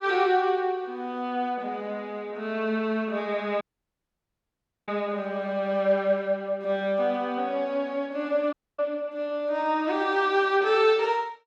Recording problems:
audio cutting out; at 3.5 s for 1.5 s and at 8.5 s

